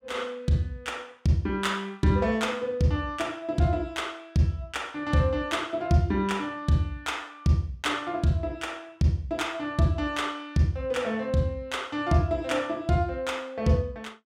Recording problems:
none

